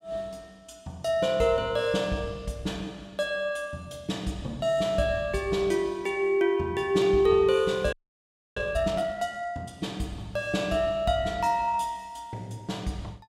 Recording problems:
audio freezing; at 8 s for 0.5 s

